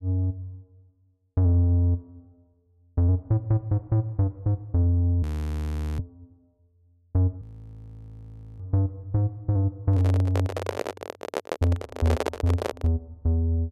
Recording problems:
audio freezing; at 5 s for 1 s and at 7.5 s for 1 s
handling noise; from 10 to 13 s; peak +3 dB vs average level

